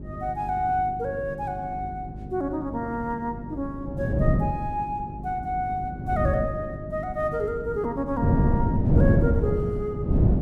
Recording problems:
electrical hum; 50 Hz, harmonics up to 400 Hz, SNR 11 dB
wind on the microphone; below 220 Hz, SNR -4 dB

